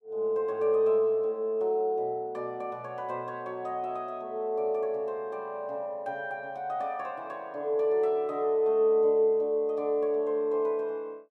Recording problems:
none

